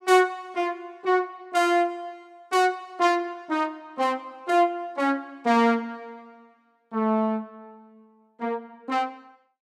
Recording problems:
none

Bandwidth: 16 kHz